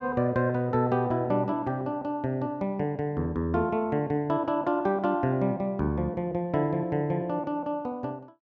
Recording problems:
none

